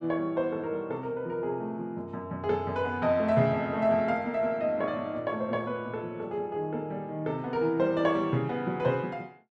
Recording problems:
none

